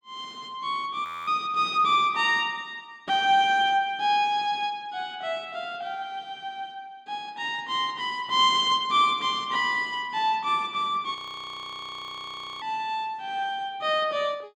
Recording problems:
audio freezing; at 1 s and at 11 s for 1.5 s

